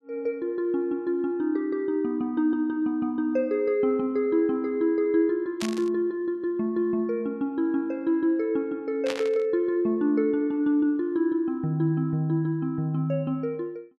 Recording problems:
static burst; at 5.5 s and at 9 s; peak -3 dB vs average level

